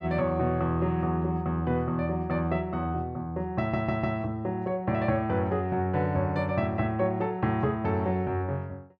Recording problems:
stutter; at 3.5 s

